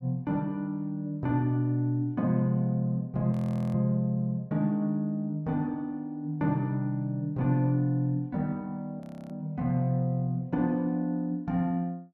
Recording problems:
audio freezing; at 3.5 s and at 9 s

